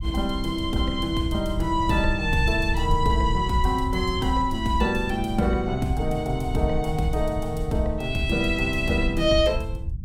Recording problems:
low-frequency rumble; below 84 Hz, SNR 7 dB

